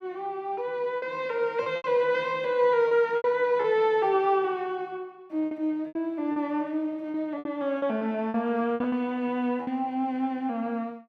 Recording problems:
lost packets; 8% of the sound replaced, filled with repeated pitch periods

